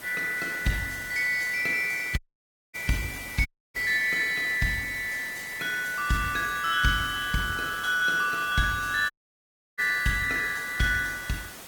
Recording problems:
codec artefacts; Opus, log-spectral distance 6 dB, nothing above 18.3 kHz
hiss; slope -2 dB per octave, SNR 14 dB
audio cutting out; at 2 s for 0.5 s, at 3.5 s and at 9 s for 0.5 s

